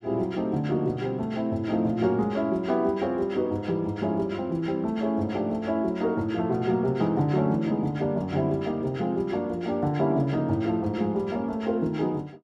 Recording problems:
none

